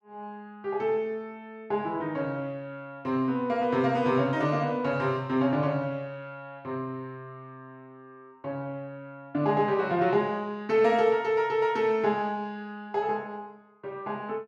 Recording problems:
none

